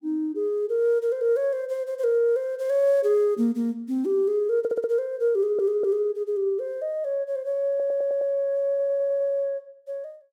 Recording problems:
stutter; 4 times, first at 4.5 s

